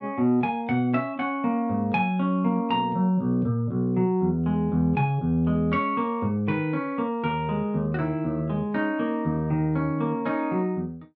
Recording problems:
none

